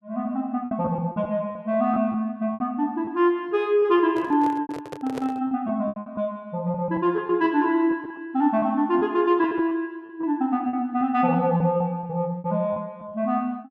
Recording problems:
packet loss; 10% of the sound replaced, filled with repeated pitch periods
handling noise; from 4 to 5.5 s; peak -4 dB vs average level

